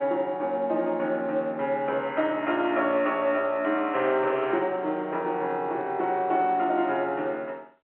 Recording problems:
phone line; 260 Hz to 3.3 kHz, G.711

